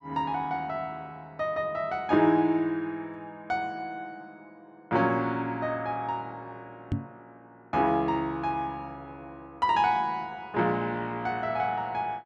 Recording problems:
knock on the microphone; at 7 s; peak +3 dB vs average level

